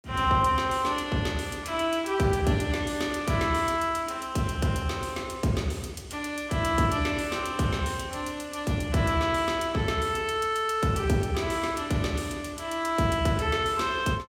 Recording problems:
none

